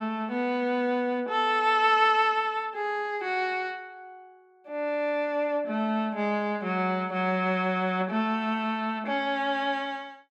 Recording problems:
none

